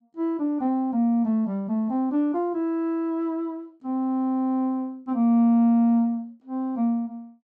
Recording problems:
none

